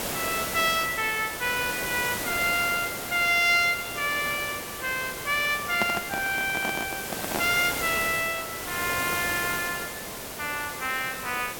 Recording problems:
hiss; slope -4 dB per octave, SNR 6 dB
handling noise; from 5.5 to 7.5 s; peak +2 dB vs average level

